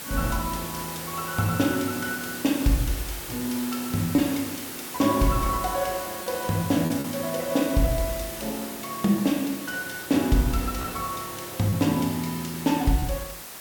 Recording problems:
background hiss; slope -1 dB per octave, SNR 8 dB
packet loss; 1.3% of the sound replaced, filled with repeated pitch periods

